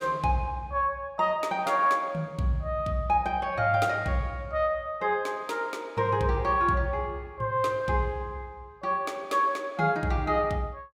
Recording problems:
none

